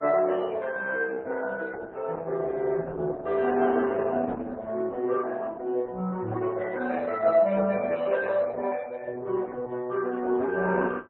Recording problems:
codec artefacts; Opus, then MP3, log-spectral distance 3 dB, nothing above 4.1 kHz

